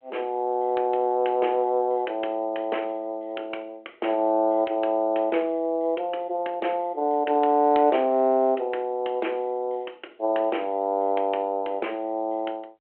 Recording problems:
telephone audio; 300 Hz to 3.2 kHz, G.726

